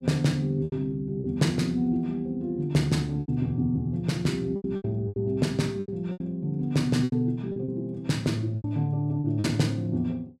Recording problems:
lost packets; 9% of the sound replaced, filled with repeated pitch periods

